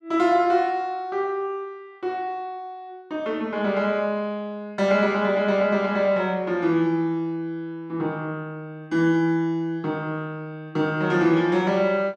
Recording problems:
none

